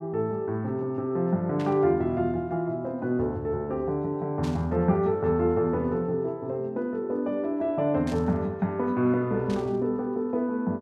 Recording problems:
burst of static; 4 times, first at 1.5 s; peak -11 dB vs average level

